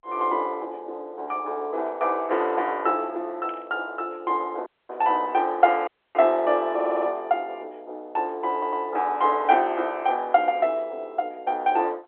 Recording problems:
telephone audio; 320 Hz to 3.6 kHz, G.711
static burst; at 3.5 s and at 9.5 s; peak -15 dB vs average level
audio cutting out; at 4.5 s and at 6 s
stutter; at 7 s and at 8.5 s

